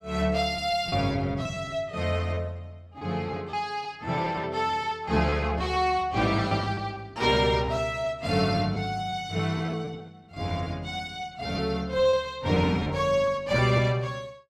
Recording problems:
packet loss; 9% of the sound replaced, filled with repeated pitch periods

